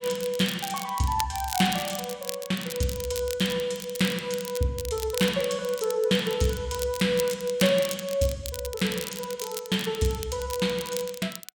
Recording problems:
crackle; vinyl, SNR 10 dB

